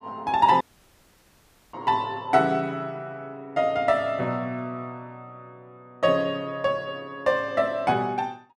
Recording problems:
audio cutting out; at 0.5 s for 1 s

